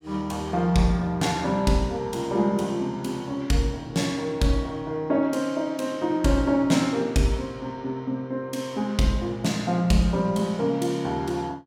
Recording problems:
none

